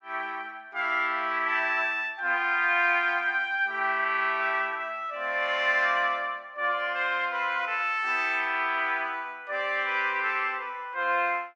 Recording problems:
none

